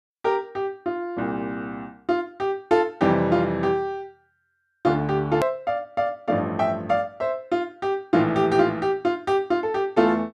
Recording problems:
hard cut with a click; at 5.5 s

